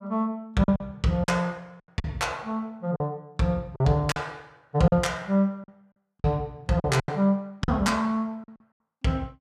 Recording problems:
lost packets; 8% of the sound replaced, filled with silence

